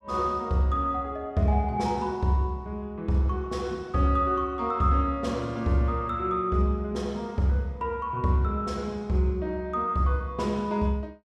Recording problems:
none

